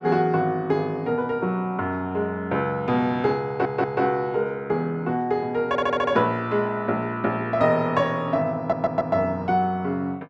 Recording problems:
stutter; at 3.5 s, at 5.5 s and at 8.5 s

